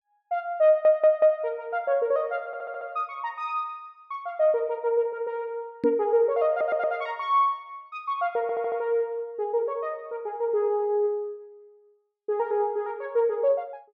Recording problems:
stutter; 4 times, first at 0.5 s
microphone thump; at 6 s; peak +1 dB vs average level

